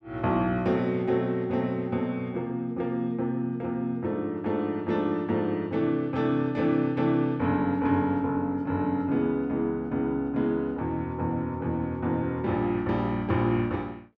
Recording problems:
none

